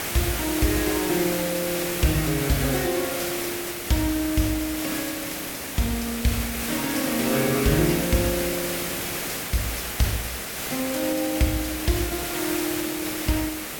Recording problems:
background hiss; slope -2 dB per octave, SNR 2 dB

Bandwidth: 17 kHz